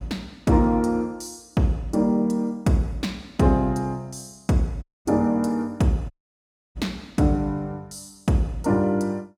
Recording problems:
audio cutting out; at 5 s and at 6 s for 0.5 s

